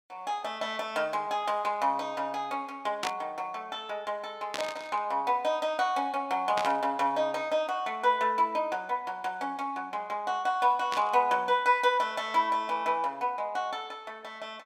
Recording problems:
burst of static; 4 times, first at 3 s; peak 0 dB vs average level

